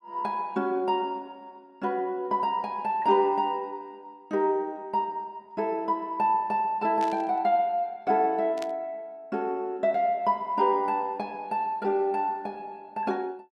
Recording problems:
burst of static; at 7 s and at 8.5 s; peak -9 dB vs average level

